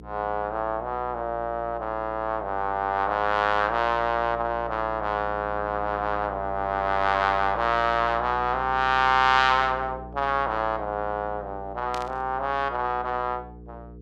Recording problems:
hum; 60 Hz, harmonics up to 480 Hz, SNR 17 dB
static burst; at 12 s; peak -7 dB vs average level

